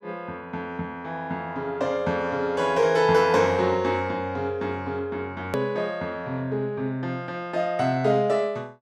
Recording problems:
click at an edit; at 5.5 s

